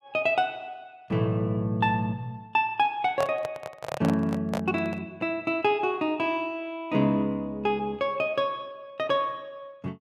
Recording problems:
microphone handling noise; from 3 to 5 s; peak 0 dB vs average level

